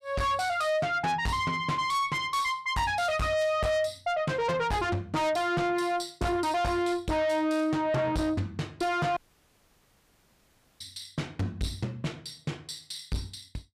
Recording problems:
distortion; soft clipping, signal-to-distortion ratio 7 dB
audio cutting out; at 9 s for 1.5 s

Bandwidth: 15 kHz